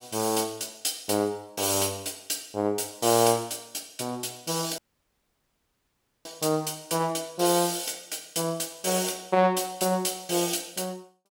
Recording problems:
dropout; at 5 s for 1.5 s

